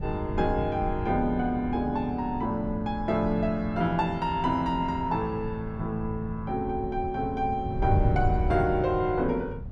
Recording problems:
wind on the microphone; below 120 Hz, SNR 7 dB

